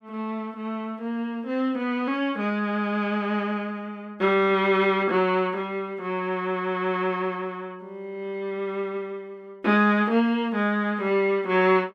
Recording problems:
none

